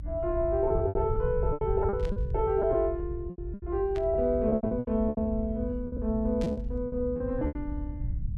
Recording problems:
rumble; below 90 Hz, SNR 7 dB
lost packets; 14% of the sound replaced, filled with repeated pitch periods
static burst; at 2 s, at 4 s and at 6.5 s; peak -12 dB vs average level

